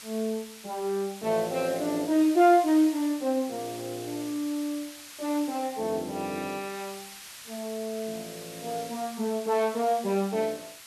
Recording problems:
background hiss; slope +3 dB per octave, SNR 15 dB

